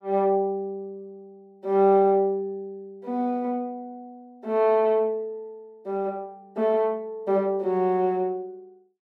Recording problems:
none

